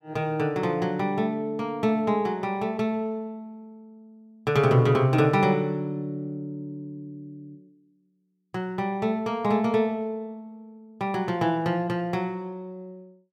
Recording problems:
none

